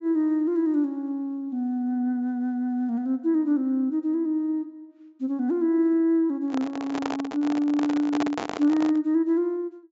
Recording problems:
treble cut off; nothing above 8 kHz
microphone handling noise; from 6.5 to 9 s; peak -1 dB vs average level

